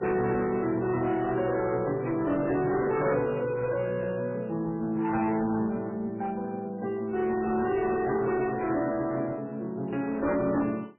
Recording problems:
codec artefacts; MP3, then MP3, log-spectral distance 3 dB, nothing above 2.7 kHz
distorted audio; soft clipping, signal-to-distortion ratio 11 dB

